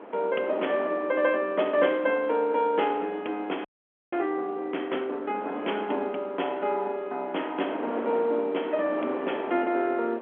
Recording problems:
phone line; 220 Hz to 3.4 kHz, G.711
wind on the microphone; below 880 Hz, SNR 12 dB
frozen audio; at 3.5 s

